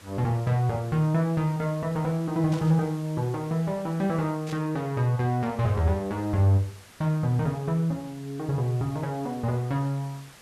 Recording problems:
background hiss; slope -2 dB per octave, SNR 23 dB
burst of static; at 2.5 s and at 4.5 s; peak -11 dB vs average level

